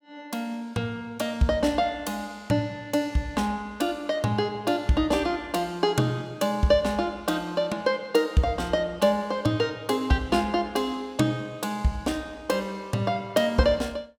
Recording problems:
none

